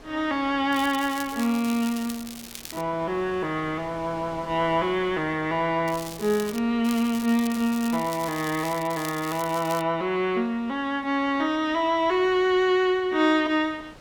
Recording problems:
wind noise; below 1.8 kHz, SNR 23 dB
crackle; from 0.5 to 3 s, at 6 s and from 7 to 10 s; loose cable, SNR 14 dB

